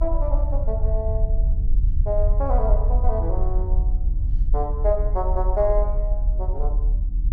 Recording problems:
mains hum; 60 Hz, harmonics up to 300 Hz, SNR 17 dB
low-frequency rumble; below 54 Hz, strongest tone 38 Hz, SNR -4 dB

